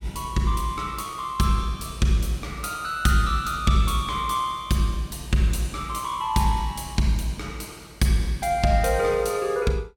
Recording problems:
none

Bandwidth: 17.5 kHz